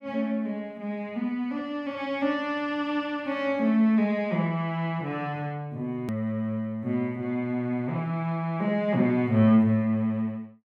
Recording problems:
click at an edit; at 6 s

